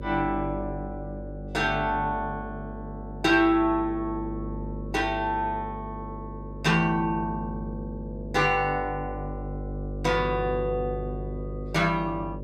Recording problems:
electrical hum; 50 Hz, harmonics up to 600 Hz, SNR 10 dB

